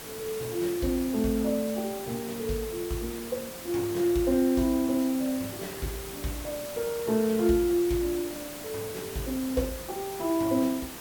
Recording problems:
background hiss; slope -3 dB per octave, SNR 10 dB

